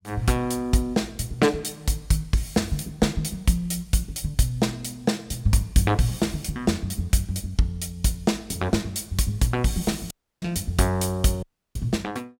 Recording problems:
dropout; at 10 s and at 11 s

